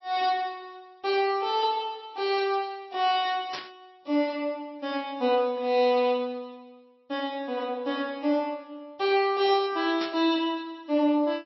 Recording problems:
lossy compression; MP3, log-spectral distance 2 dB, nothing above 4.8 kHz
burst of static; at 3.5 s and at 10 s; peak -4 dB vs average level

